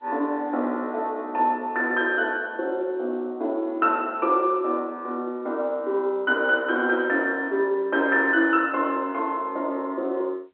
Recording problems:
telephone audio; 260 Hz to 3.6 kHz, G.711

